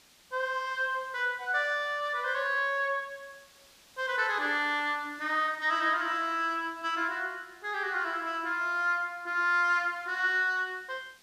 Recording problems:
hiss; slope 0 dB per octave, SNR 27 dB

